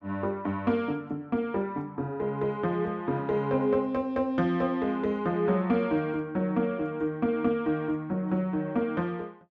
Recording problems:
none

